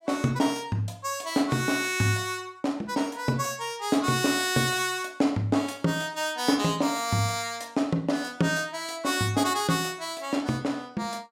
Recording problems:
none

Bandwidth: 16 kHz